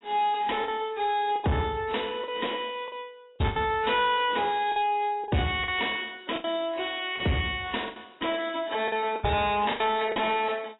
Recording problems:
lossy compression; AAC, log-spectral distance 5 dB, nothing above 3.5 kHz
distorted audio; soft clipping, signal-to-distortion ratio 10 dB
lost packets; 8% of the sound replaced, filled with the last packet

